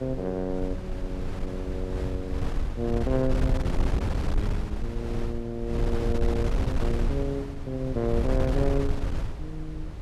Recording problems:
wind on the microphone; below 96 Hz, SNR -1 dB

